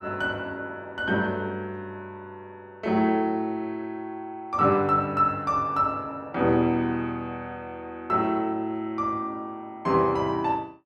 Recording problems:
none

